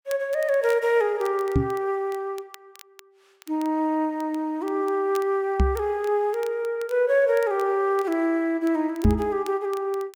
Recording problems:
crackling; vinyl, SNR 25 dB
knock on the microphone; at 1.5 s, at 5.5 s and at 9 s; peak +8 dB vs average level

